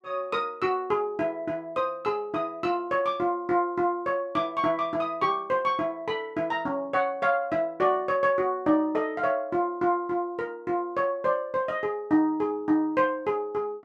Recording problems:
none

